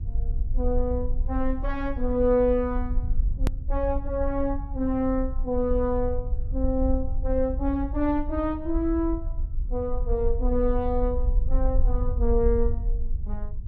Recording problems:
low-frequency rumble; below 56 Hz, SNR 3 dB
click at an edit; at 3.5 s

